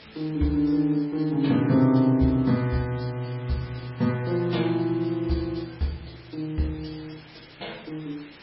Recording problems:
codec artefacts; MP3, log-spectral distance 7 dB, nothing above 5.3 kHz
background hiss; SNR 24 dB

